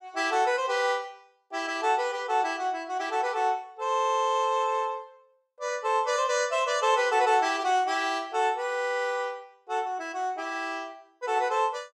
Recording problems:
none

